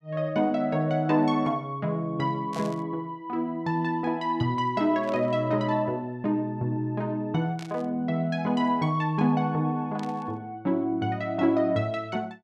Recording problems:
burst of static; 4 times, first at 2.5 s; peak -12 dB vs average level

